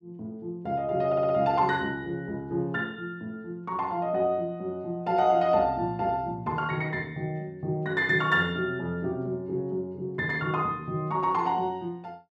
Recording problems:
stutter; at 1 s

